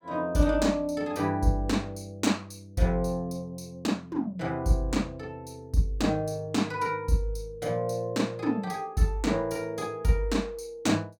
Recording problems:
none

